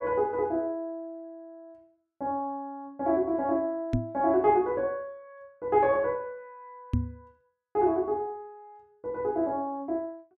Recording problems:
knock on the microphone; at 4 s and at 7 s; peak +5 dB vs average level

